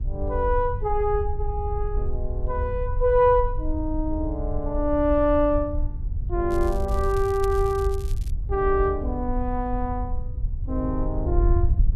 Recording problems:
wind noise; below 70 Hz, SNR 4 dB
crackle; from 6.5 to 8.5 s; loose cable, SNR 21 dB

